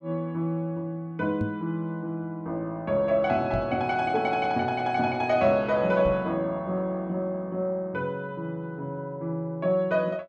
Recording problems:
microphone thump; at 1.5 s, at 3.5 s and at 6 s; peak 0 dB vs average level

